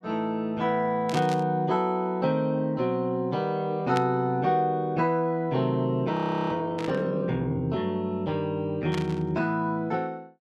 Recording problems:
static burst; 4 times, first at 1 s; peak -4 dB vs average level
frozen audio; at 6 s

